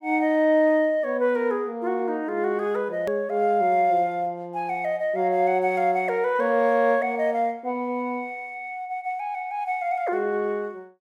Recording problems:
edit click; at 3 s

